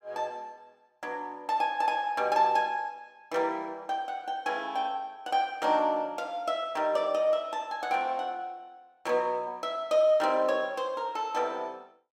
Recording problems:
none

